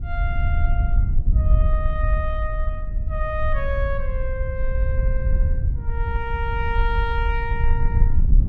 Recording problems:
wind noise; below 68 Hz, SNR -6 dB

